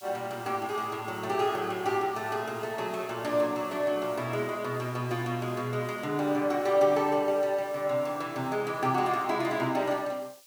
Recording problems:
background hiss; slope +4 dB per octave, SNR 23 dB

